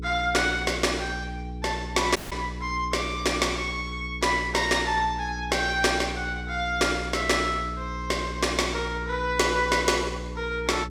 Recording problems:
hum; 60 Hz, harmonics up to 480 Hz, SNR 10 dB
dropout; at 2 s

